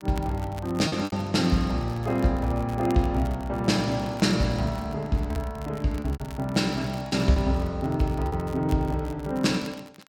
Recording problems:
crackle; vinyl, SNR 23 dB
packet loss; 4% of the sound replaced, filled with repeated pitch periods

